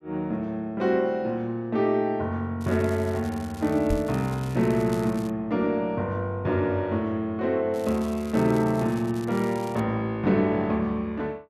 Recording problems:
crackling; from 2.5 to 5.5 s and from 7.5 to 10 s; loose cable, SNR 21 dB
knock on the microphone; at 4 s; peak -1 dB vs average level

